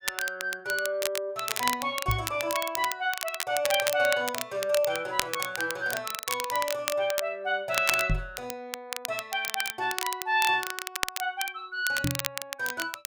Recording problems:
crackling; vinyl, SNR 4 dB
microphone thump; at 2 s, at 8 s and at 12 s; peak +4 dB vs average level

